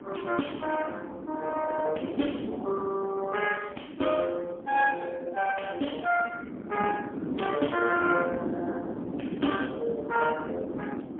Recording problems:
phone line; 220 Hz to 3.2 kHz, AMR-NB, then MP3
wind on the microphone; below 390 Hz, SNR 7 dB

